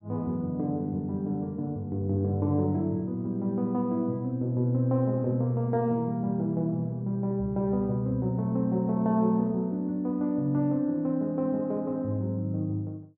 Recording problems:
none

